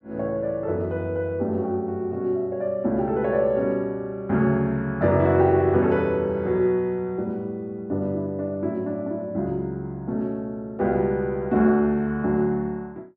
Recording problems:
none

